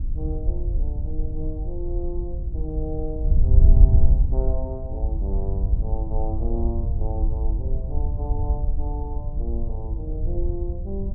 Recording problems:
wind on the microphone; below 68 Hz, SNR -10 dB

